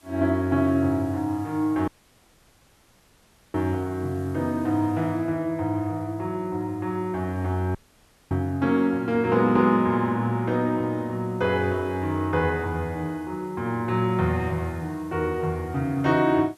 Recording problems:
hiss; slope -2 dB per octave, SNR 30 dB
dropout; at 2 s for 1.5 s and at 8 s for 0.5 s

